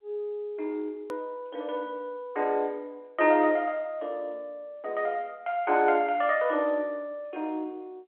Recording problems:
telephone audio; 260 Hz to 3.5 kHz, G.711
click at an edit; at 1 s

